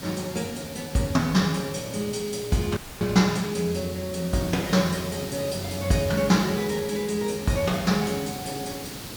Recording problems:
background hiss; SNR 11 dB
dropout; at 3 s

